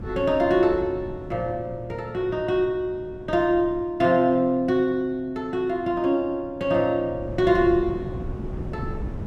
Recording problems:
wind noise; below 230 Hz, SNR 14 dB

